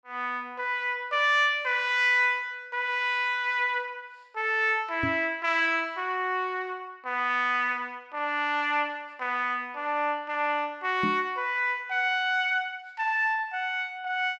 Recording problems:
microphone bump; at 5 s and at 11 s; peak -2 dB vs average level

